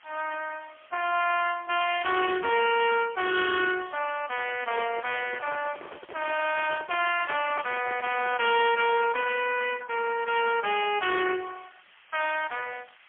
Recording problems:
phone line; 320 Hz to 3.2 kHz, AMR-NB, then MP3
hiss; SNR 27 dB
microphone handling noise; from 4.5 to 8.5 s; peak -9 dB vs average level

